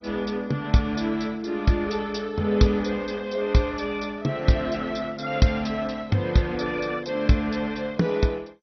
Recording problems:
codec artefacts; MP2, log-spectral distance 4 dB, nothing above 5.8 kHz

